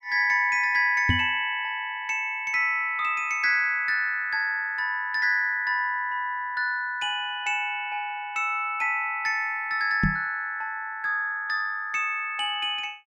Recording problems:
microphone bump; at 1 s and at 10 s; peak +4 dB vs average level

